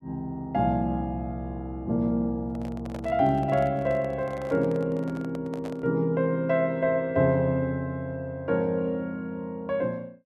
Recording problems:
handling noise; from 2.5 to 6 s; peak -8 dB vs average level

